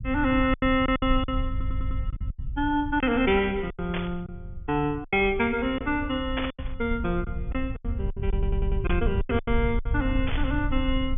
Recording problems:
low-pass filter; nothing above 3.5 kHz
low-frequency rumble; below 80 Hz, SNR 6 dB
packet loss; 10% of the sound replaced, filled with silence
stutter; at 1.5 s and at 8.5 s
static burst; 4 times, first at 4 s; peak -1 dB vs average level

